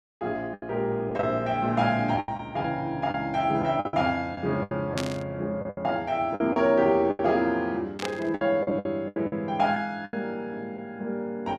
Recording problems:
lost packets; 10% of the sound replaced, filled with the last packet
static burst; at 5 s and at 8 s; peak -1 dB vs average level

